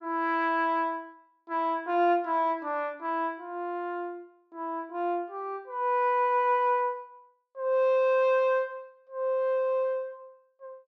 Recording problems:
none

